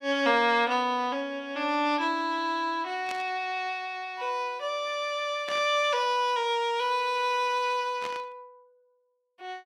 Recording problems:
static burst; at 3 s, at 5.5 s and at 8 s; peak -7 dB vs average level

